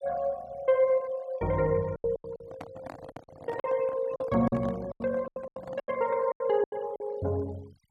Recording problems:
denoising artefacts; signal-to-artefact ratio 23 dB
lost packets; 12% of the sound replaced, filled with silence
microphone handling noise; from 2.5 to 6 s; peak -9 dB vs average level

